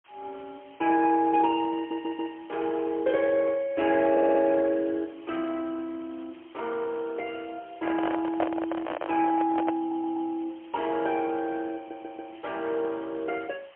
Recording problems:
telephone audio; 280 Hz to 3.3 kHz, AMR-NB, then MP3
hiss; SNR 27 dB
stutter; 4 times, first at 2 s
handling noise; from 7.5 to 9.5 s; peak +2 dB vs average level

